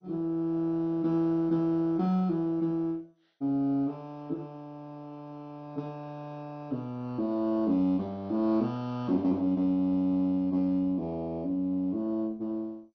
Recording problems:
lossy codec; MP2, log-spectral distance 2 dB, nothing above 5.5 kHz

